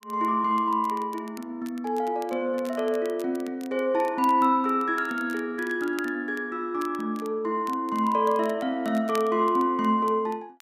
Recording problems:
crackle; vinyl, SNR 23 dB

